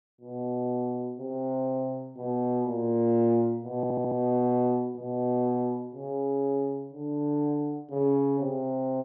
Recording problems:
stutter; at 4 s

